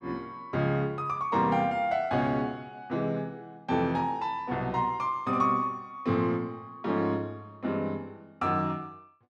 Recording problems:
none

